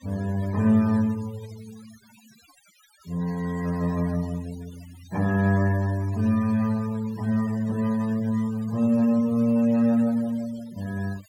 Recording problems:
denoising artefacts; signal-to-artefact ratio 22 dB

